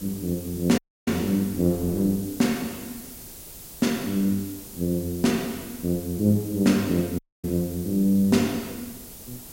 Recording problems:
hiss; slope +3 dB per octave, SNR 15 dB
wind on the microphone; below 420 Hz, SNR 24 dB
audio cutting out; at 1 s and at 7 s

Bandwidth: 16 kHz